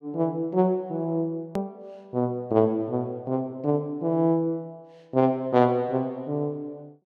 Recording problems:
hard cut with a click; at 1.5 s

